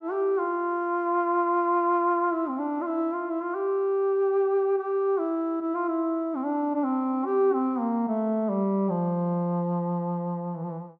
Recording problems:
none

